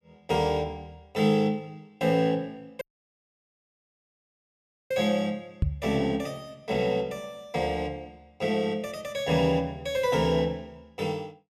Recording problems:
audio cutting out; at 3 s for 2 s
microphone thump; at 5.5 s; peak +6 dB vs average level

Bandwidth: 14 kHz